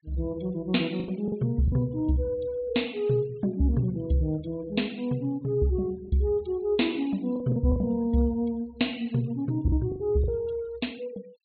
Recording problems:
treble cut off; nothing above 4.3 kHz
denoising artefacts; signal-to-artefact ratio 27 dB
packet loss; 4% of the sound replaced, filled with the last packet

